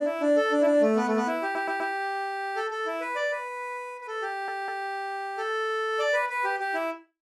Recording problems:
audio stuttering; at 1.5 s and at 4.5 s

